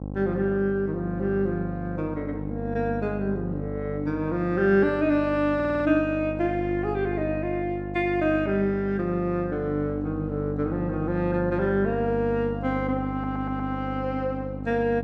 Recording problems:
electrical hum; 50 Hz, harmonics up to 1.1 kHz, SNR 7 dB
audio stuttering; at 5.5 s and at 13 s

